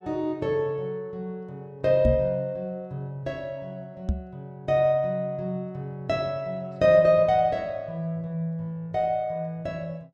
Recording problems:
knock on the microphone; at 2 s and at 4 s; peak +5 dB vs average level

